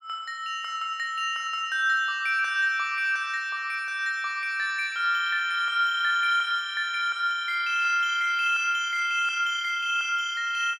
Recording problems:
none

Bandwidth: 17.5 kHz